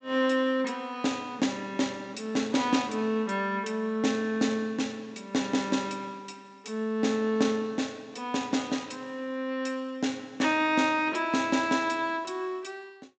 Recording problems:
low-pass filter; nothing above 8 kHz

